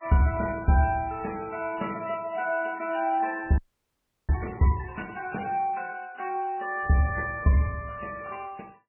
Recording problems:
lossy codec; MP3, log-spectral distance 5 dB, nothing above 2.4 kHz
audio freezing; at 3.5 s for 0.5 s

